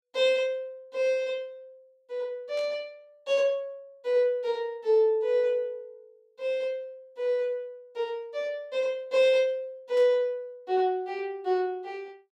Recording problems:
burst of static; at 2.5 s and at 10 s; peak -15 dB vs average level

